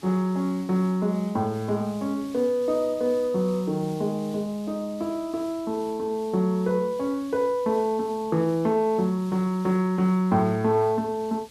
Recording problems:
background hiss; SNR 23 dB

